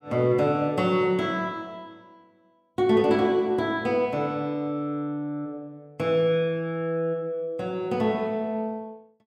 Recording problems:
none

